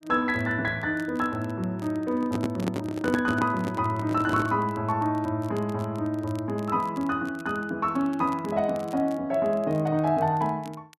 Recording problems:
crackling; vinyl, SNR 27 dB
microphone handling noise; from 2 to 4.5 s; peak +2 dB vs average level

